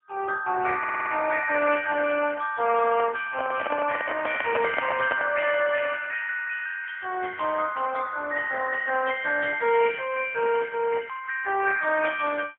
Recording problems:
phone line; 320 Hz to 3 kHz, AMR-NB, then MP3
audio stuttering; at 1 s
microphone handling noise; from 2.5 to 5.5 s; peak 0 dB vs average level

